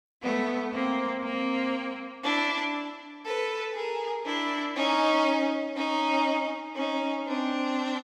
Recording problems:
none

